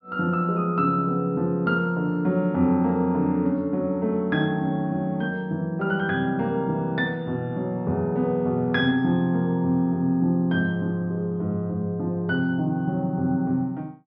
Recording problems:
treble cut off; nothing above 5.5 kHz

